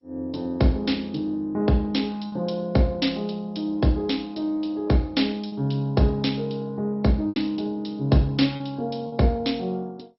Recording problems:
codec artefacts; MP2, log-spectral distance 4 dB, nothing above 5.5 kHz
packet loss; 2% of the sound replaced, filled with repeated pitch periods

